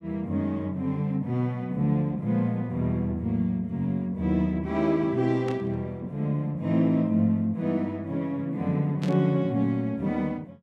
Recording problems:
static burst; at 5.5 s and at 9 s; peak -9 dB vs average level

